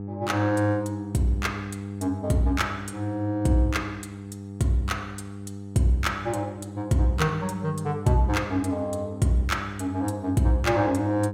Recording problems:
hum; 50 Hz, harmonics up to 800 Hz, SNR 11 dB

